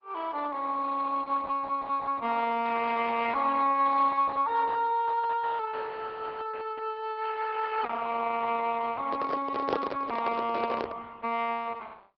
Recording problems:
treble cut off; nothing above 5.5 kHz
lossy codec; Opus, log-spectral distance 4 dB
handling noise; from 9 to 11 s; peak +3 dB vs average level

